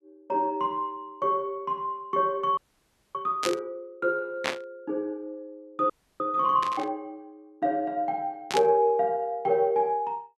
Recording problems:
audio freezing; at 2.5 s for 0.5 s and at 6 s
burst of static; 4 times, first at 3.5 s; peak +3 dB vs average level

